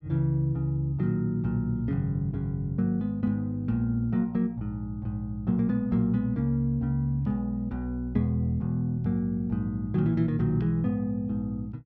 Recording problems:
none

